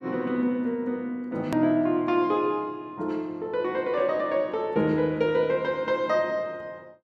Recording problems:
edit click; at 1.5 s

